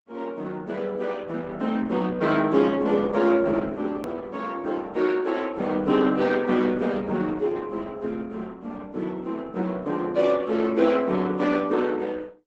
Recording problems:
lossy compression; Opus, log-spectral distance 3 dB
hard cut with a click; at 4 s

